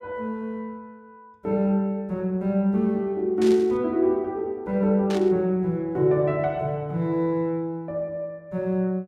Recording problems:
burst of static; at 3.5 s and at 5 s; peak -8 dB vs average level

